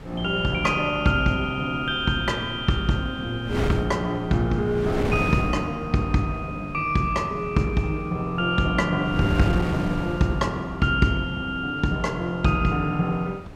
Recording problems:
wind on the microphone; below 470 Hz, SNR 11 dB

